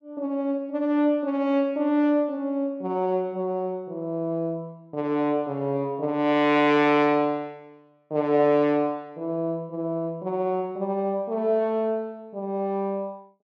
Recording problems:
none

